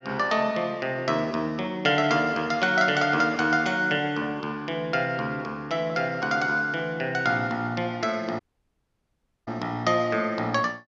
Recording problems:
dropout; at 8.5 s for 1 s

